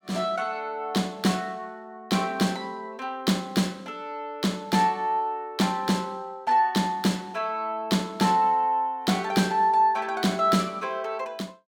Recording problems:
none

